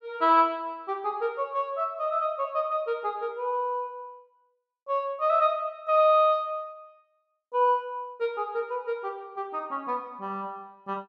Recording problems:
none

